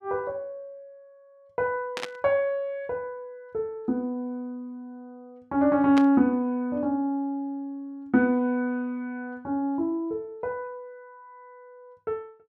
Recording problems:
burst of static; at 2 s and at 6 s; peak -1 dB vs average level

